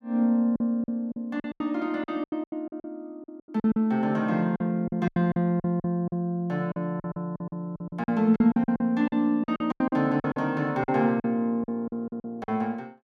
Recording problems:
lost packets; 16% of the sound replaced, filled with silence

